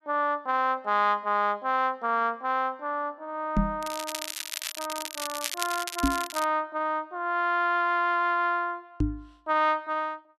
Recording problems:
knock on the microphone; at 3.5 s, at 6 s and at 9 s; peak +5 dB vs average level
crackle; from 4 to 6.5 s; loose cable, SNR 7 dB

